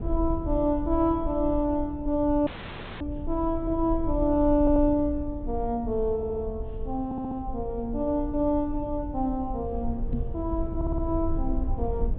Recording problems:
low-pass filter; nothing above 4 kHz
low-frequency rumble; below 68 Hz, SNR 8 dB
dropout; at 2.5 s for 0.5 s
audio stuttering; 4 times, first at 4.5 s
microphone bump; at 10 s; peak +1 dB vs average level

